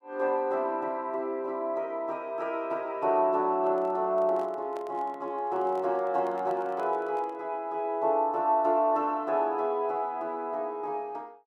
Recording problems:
microphone handling noise; from 3.5 to 7.5 s; peak -11 dB vs average level

